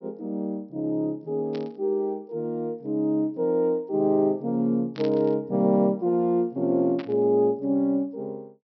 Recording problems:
treble missing; nothing above 5.7 kHz
burst of static; at 1.5 s, at 5 s and at 7 s; peak -11 dB vs average level

